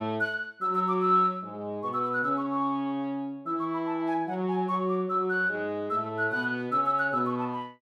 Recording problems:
none

